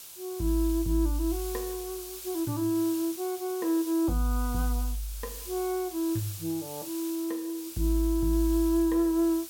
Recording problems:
background hiss; SNR 11 dB

